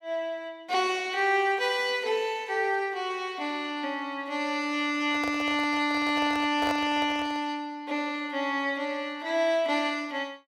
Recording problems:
handling noise; from 5 to 7.5 s; peak -1 dB vs average level

